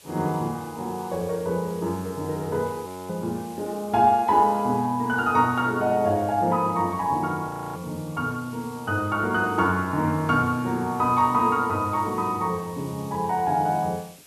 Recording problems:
background hiss; slope 0 dB per octave, SNR 22 dB
audio freezing; at 3 s and at 7.5 s

